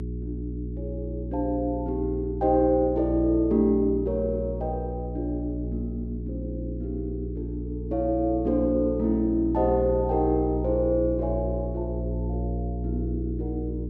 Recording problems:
mains hum; 60 Hz, harmonics up to 420 Hz, SNR 5 dB

